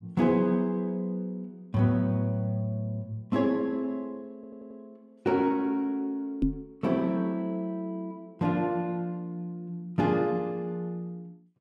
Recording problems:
audio stuttering; at 4.5 s
microphone bump; at 6.5 s; peak +7 dB vs average level

